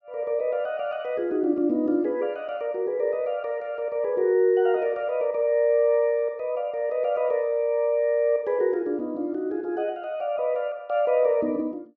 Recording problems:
none

